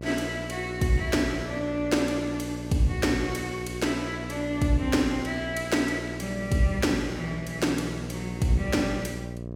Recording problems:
hum; 60 Hz, harmonics up to 720 Hz, SNR 10 dB

